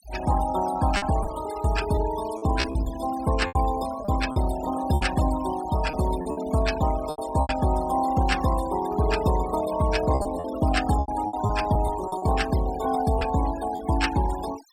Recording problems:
denoising artefacts; signal-to-artefact ratio 13 dB
lost packets; 8% of the sound replaced, filled with repeated pitch periods

